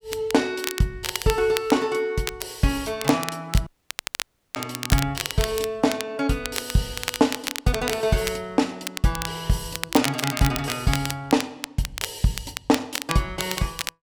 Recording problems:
crackling; vinyl, SNR 7 dB
audio cutting out; at 3.5 s for 1 s

